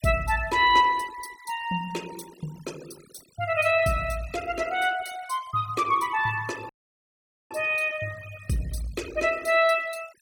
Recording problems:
denoising artefacts; signal-to-artefact ratio 21 dB
audio cutting out; at 6.5 s for 1 s

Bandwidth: 17 kHz